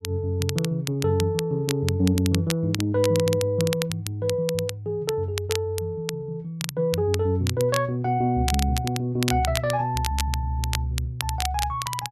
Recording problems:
crackle; vinyl, SNR 8 dB

